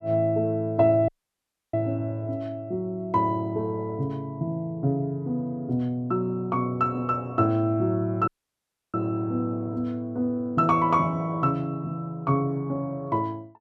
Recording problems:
audio cutting out; at 1 s for 0.5 s and at 8.5 s for 0.5 s

